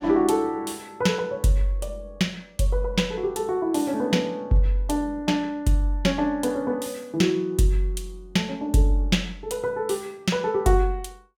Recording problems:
none

